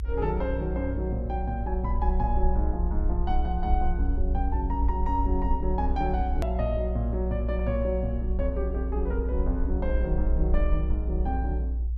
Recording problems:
rumble; below 60 Hz, strongest tone 58 Hz, SNR -2 dB
click at an edit; at 6.5 s

